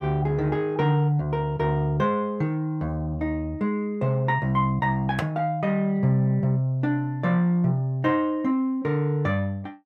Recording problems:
none

